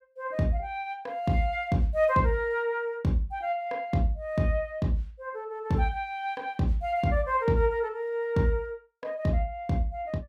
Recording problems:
none

